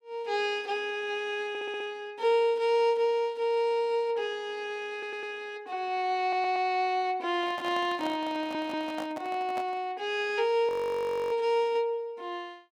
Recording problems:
stutter; 4 times, first at 1.5 s
microphone handling noise; from 7.5 to 10 s; peak -5 dB vs average level
audio freezing; at 11 s for 0.5 s

